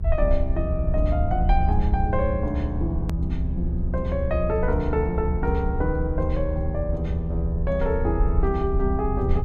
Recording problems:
hum; 60 Hz, harmonics up to 600 Hz, SNR 9 dB
low-frequency rumble; below 70 Hz, SNR 1 dB
edit click; at 3 s

